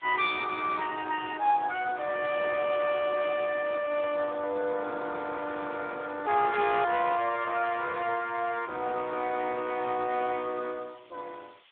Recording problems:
telephone audio; 260 Hz to 3.7 kHz, Speex
hiss; SNR 27 dB
burst of static; at 6.5 s; peak -8 dB vs average level

